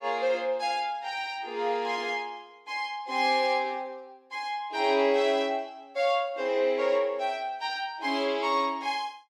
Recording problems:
none

